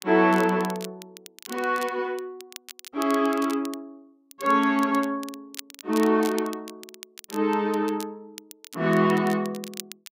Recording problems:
crackling; vinyl, SNR 18 dB

